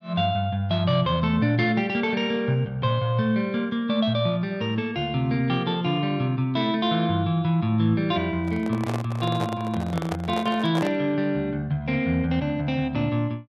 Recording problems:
microphone handling noise; from 8.5 to 11 s; peak -2 dB vs average level

